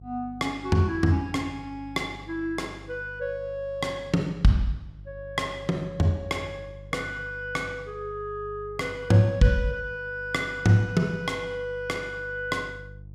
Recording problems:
electrical hum; 50 Hz, harmonics up to 350 Hz, SNR 19 dB

